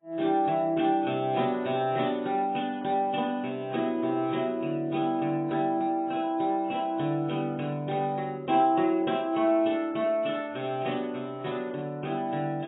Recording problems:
lossy compression; AAC, log-spectral distance 2 dB, nothing above 3.4 kHz

